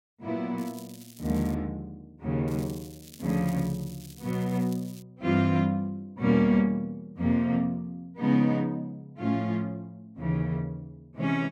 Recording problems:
crackling; at 0.5 s and from 2.5 to 5 s; loose cable, SNR 21 dB

